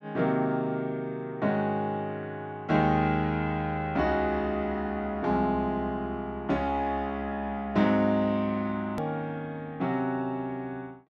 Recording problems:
edit click; at 9 s

